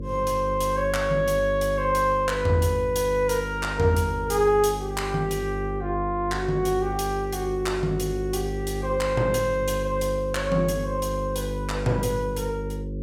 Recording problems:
hum; 50 Hz, harmonics up to 550 Hz, SNR 7 dB

